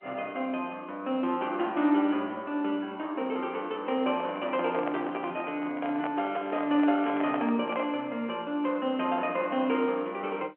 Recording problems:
telephone audio; 240 Hz to 3.3 kHz, G.711
handling noise; from 4 to 8 s; peak -1 dB vs average level

